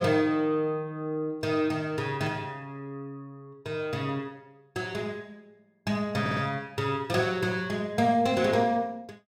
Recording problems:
audio stuttering; at 6 s

